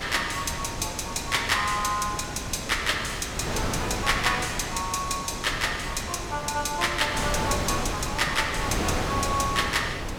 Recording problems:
wind noise; below 1.4 kHz, SNR 5 dB

